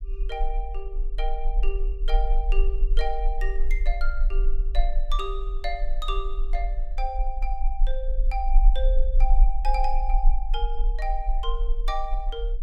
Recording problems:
low-frequency rumble; below 36 Hz, strongest tone 20 Hz, SNR -6 dB

